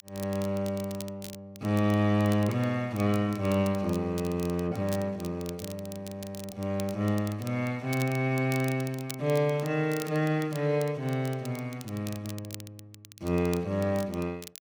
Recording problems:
crackle; vinyl, SNR 17 dB

